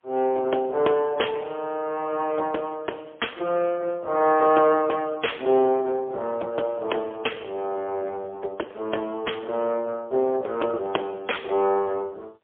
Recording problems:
phone line; 300 Hz to 3.4 kHz, AMR-NB, then MP3

